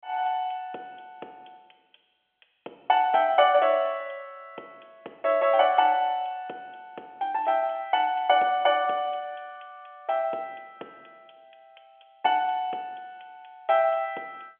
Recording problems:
telephone audio; 320 Hz to 3.3 kHz, G.711

